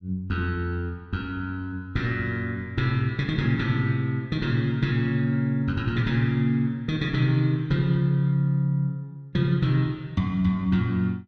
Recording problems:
none

